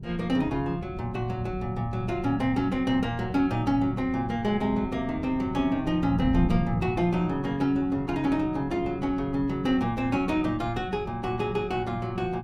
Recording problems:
wind on the microphone; below 180 Hz, SNR 11 dB

